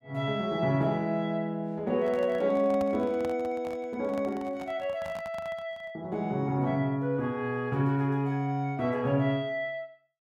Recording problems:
handling noise; from 2 to 6 s; peak -7 dB vs average level

